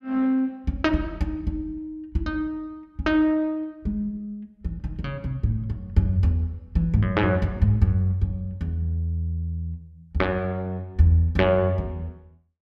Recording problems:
none

